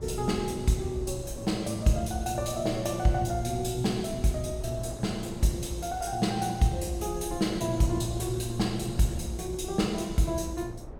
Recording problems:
rumble; below 130 Hz, SNR 15 dB
wind on the microphone; below 690 Hz, SNR 18 dB

